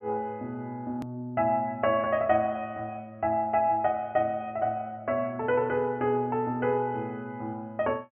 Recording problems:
treble missing; nothing above 3.1 kHz
edit click; at 1 s

